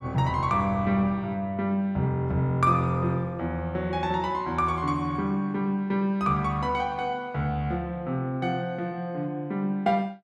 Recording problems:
none

